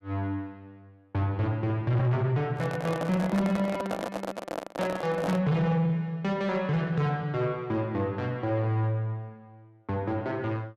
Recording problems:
distorted audio; soft clipping, signal-to-distortion ratio 10 dB
handling noise; from 2.5 to 5.5 s; peak 0 dB vs average level

